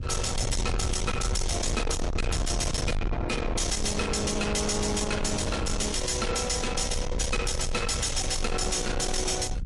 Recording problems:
lossy codec; MP3, log-spectral distance 6 dB, nothing above 11.3 kHz
distorted audio; soft clipping, signal-to-distortion ratio 6 dB
rumble; below 470 Hz, SNR 4 dB

